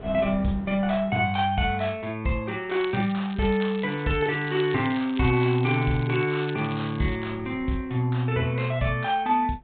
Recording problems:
treble missing; nothing above 4 kHz
wind noise; below 350 Hz, SNR 18 dB
crackle; from 3 to 7 s; loose cable, SNR 18 dB

